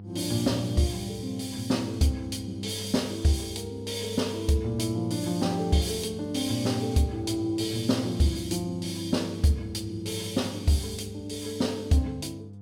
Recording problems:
hum; 50 Hz, harmonics up to 500 Hz, SNR 13 dB

